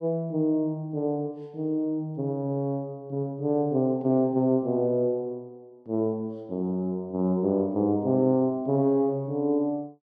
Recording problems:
none

